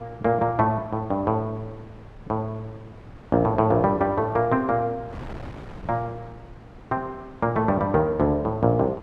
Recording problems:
wind noise; below 570 Hz, SNR 20 dB

